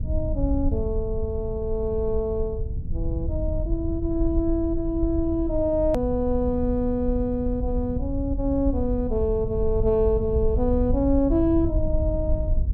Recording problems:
rumble; below 78 Hz, SNR 4 dB
hard cut with a click; at 6 s

